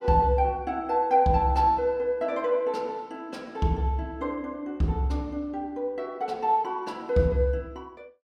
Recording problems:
none

